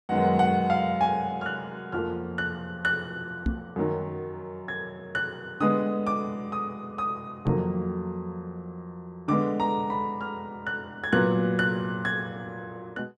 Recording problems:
knock on the microphone; at 3.5 s and at 7.5 s; peak +5 dB vs average level

